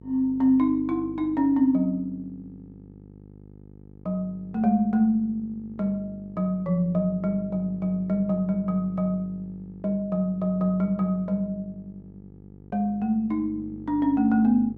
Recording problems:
hum; 50 Hz, harmonics up to 550 Hz, SNR 20 dB

